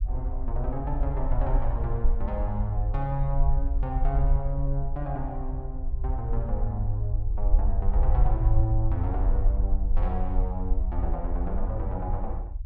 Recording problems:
rumble; below 52 Hz, SNR -3 dB

